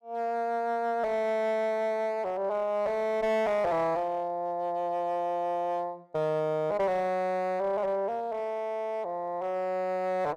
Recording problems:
distorted audio; hard clipping, uneven, signal-to-distortion ratio 11 dB

